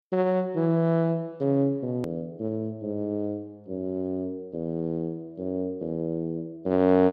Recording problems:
click at an edit; at 2 s

